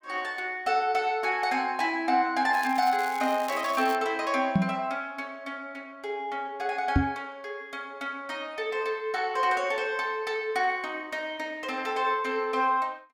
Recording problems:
crackle; from 2.5 to 4 s; loose cable, SNR 16 dB
microphone thump; at 4.5 s and at 7 s; peak +8 dB vs average level

